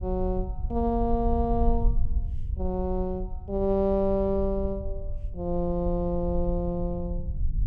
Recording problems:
low-frequency rumble; below 60 Hz, SNR 5 dB

